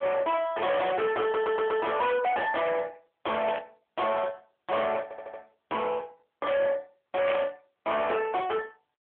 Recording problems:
phone line; 240 Hz to 3.3 kHz, AMR-NB
distorted audio; hard clipping, uneven, signal-to-distortion ratio 6 dB
audio stuttering; at 1 s and at 5 s
burst of static; at 3.5 s and at 7.5 s; peak -3 dB vs average level

